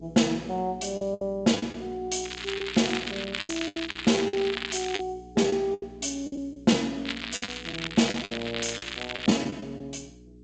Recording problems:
lossy compression; G.722, log-spectral distance 11 dB, nothing above 7.3 kHz
electrical hum; 60 Hz, harmonics up to 420 Hz, SNR 20 dB
packet loss; 10% of the sound replaced, filled with the last packet
crackling; from 2 to 5 s and from 7 to 9.5 s; loose cable, SNR 6 dB

